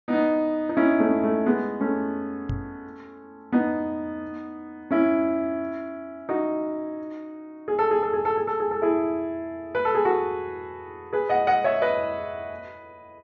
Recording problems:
low-pass filter; nothing above 6.8 kHz
microphone thump; at 2.5 s; peak -1 dB vs average level

